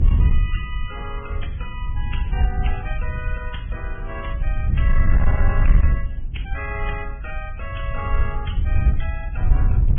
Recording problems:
low-pass filter; nothing above 3.3 kHz
lossy codec; MP3, then Vorbis, log-spectral distance 2 dB
distortion; hard clipping, signal-to-distortion ratio 11 dB
wind on the microphone; below 72 Hz, SNR -9 dB

